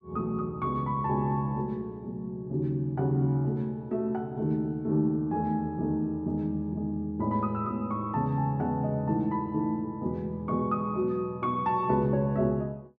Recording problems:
none

